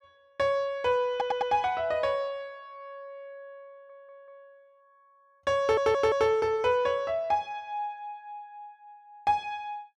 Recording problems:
stutter; at 1 s, at 3.5 s and at 5.5 s

